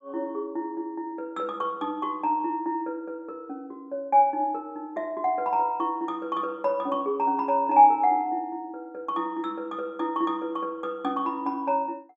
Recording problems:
none

